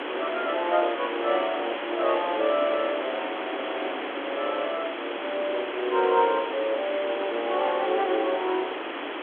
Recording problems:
telephone audio; 280 Hz to 3.5 kHz, G.726
hiss; SNR 5 dB

